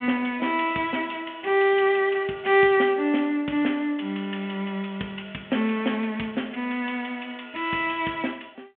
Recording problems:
phone line; 150 Hz to 3.4 kHz, G.726

